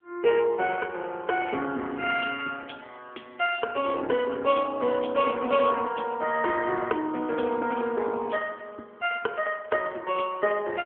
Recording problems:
phone line; 260 Hz to 3.3 kHz, AMR-NB

